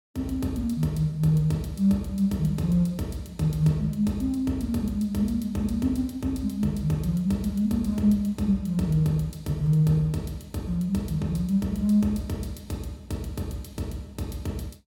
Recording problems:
none

